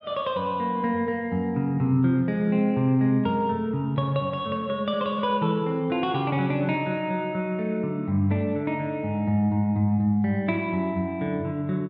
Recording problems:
none

